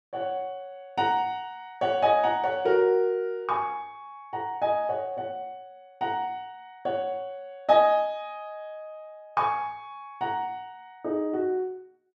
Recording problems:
none

